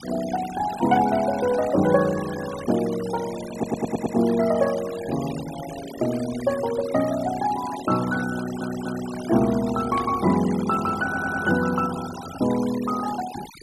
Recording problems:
noise reduction artefacts; signal-to-artefact ratio 14 dB
audio stuttering; at 3.5 s, at 8.5 s and at 11 s
burst of static; at 10 s; peak -10 dB vs average level

